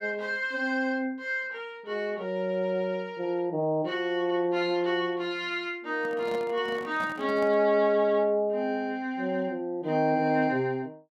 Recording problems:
microphone handling noise; from 6 to 7.5 s; peak -7 dB vs average level

